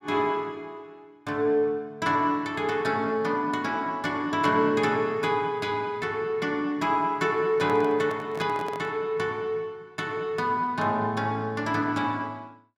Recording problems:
handling noise; from 7.5 to 9 s; peak -7 dB vs average level

